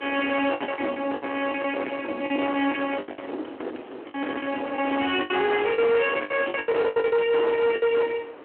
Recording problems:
phone line; 240 Hz to 3.2 kHz, Speex
distortion; soft clipping, signal-to-distortion ratio 8 dB
wind on the microphone; below 1.4 kHz, SNR 19 dB
packet loss; 14% of the sound replaced, filled with the last packet

